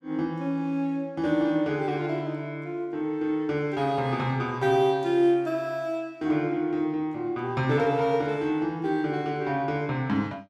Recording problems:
none

